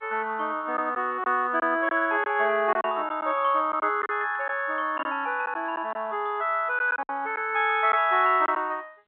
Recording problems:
telephone audio; 240 Hz to 3.4 kHz, G.711
lost packets; 5% of the sound replaced, filled with silence

